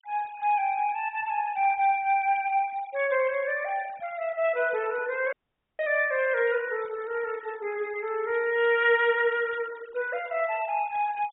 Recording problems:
low-pass filter; nothing above 4 kHz
denoising artefacts; signal-to-artefact ratio 21 dB
dropout; at 5.5 s

